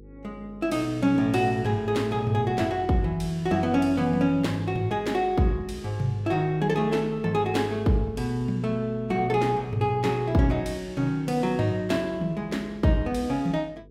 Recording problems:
electrical hum; 50 Hz, harmonics up to 500 Hz, SNR 23 dB

